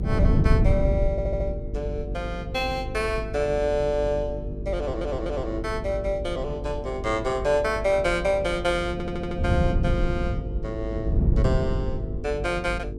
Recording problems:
hum; 50 Hz, harmonics up to 450 Hz, SNR 9 dB
wind on the microphone; below 150 Hz, SNR 2 dB
audio stuttering; at 1 s, at 5 s and at 9 s

